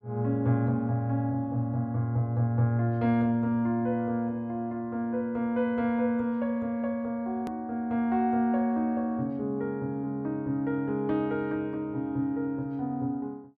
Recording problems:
hard cut with a click; at 7.5 s

